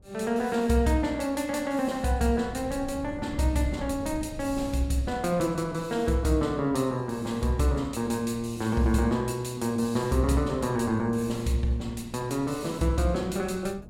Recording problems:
wind on the microphone; below 200 Hz, SNR 18 dB

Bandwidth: 16 kHz